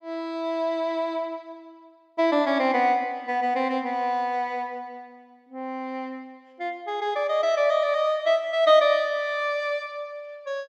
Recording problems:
none

